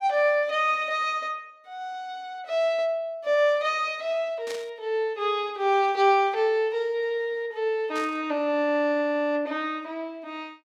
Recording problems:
static burst; at 4.5 s and at 8 s; peak -8 dB vs average level

